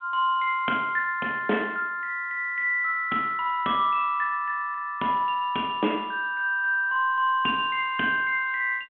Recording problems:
phone line; 190 Hz to 3.4 kHz, G.726

